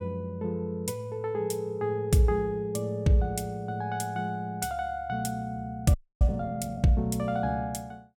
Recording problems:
frozen audio; at 6 s

